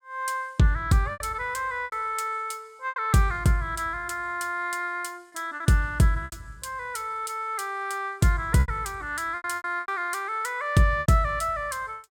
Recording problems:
lost packets; 6% of the sound replaced, filled with repeated pitch periods

